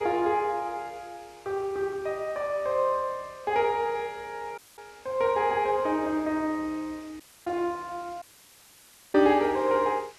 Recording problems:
hiss; slope 0 dB per octave, SNR 25 dB
dropout; at 4.5 s, at 7 s and at 8 s for 1 s

